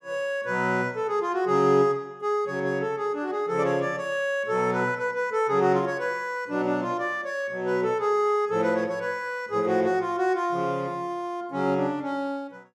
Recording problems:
none

